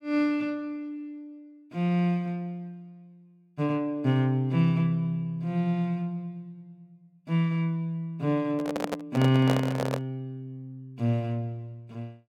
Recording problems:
handling noise; from 8.5 to 10 s; peak +3 dB vs average level

